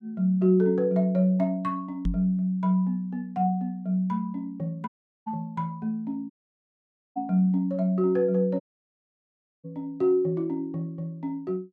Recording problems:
microphone bump; at 2 s; peak +2 dB vs average level
audio cutting out; at 5 s, at 6.5 s for 1 s and at 8.5 s for 1 s

